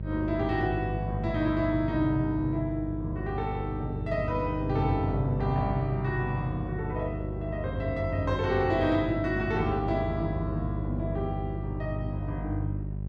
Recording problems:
hum; 50 Hz, harmonics up to 450 Hz, SNR 5 dB

